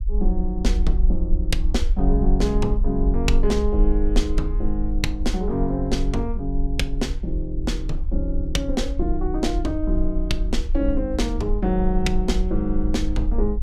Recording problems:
low-frequency rumble; below 48 Hz, SNR 1 dB

